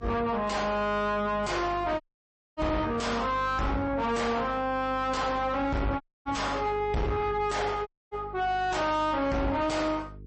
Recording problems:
lossy compression; MP3, log-spectral distance 2 dB, nothing above 8.2 kHz
distorted audio; soft clipping, signal-to-distortion ratio 6 dB
electrical hum; 50 Hz, harmonics up to 450 Hz, SNR 17 dB
dropout; at 2 s for 0.5 s, at 6 s and at 8 s

